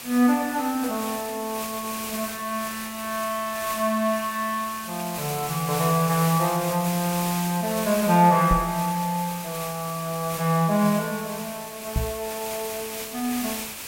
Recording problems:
hiss; slope 0 dB per octave, SNR 8 dB
microphone thump; at 8.5 s and at 12 s; peak +3 dB vs average level

